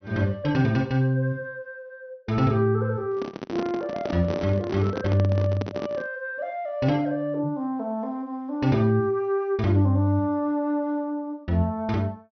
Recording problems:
treble cut off; nothing above 6.1 kHz
handling noise; from 3 to 6 s; peak -1 dB vs average level

